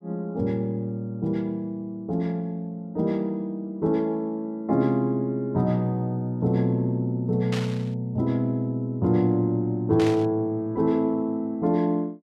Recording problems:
burst of static; at 7.5 s and at 10 s; peak -4 dB vs average level

